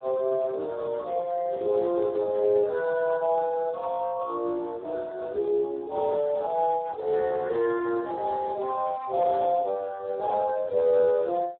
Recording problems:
telephone audio; 300 Hz to 2.1 kHz, Speex

